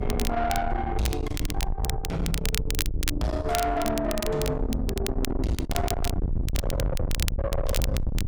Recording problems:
distortion; soft clipping, signal-to-distortion ratio 6 dB
mains hum; 50 Hz, harmonics up to 300 Hz, SNR 14 dB
wind on the microphone; below 190 Hz, SNR 1 dB
crackling; vinyl, SNR 7 dB

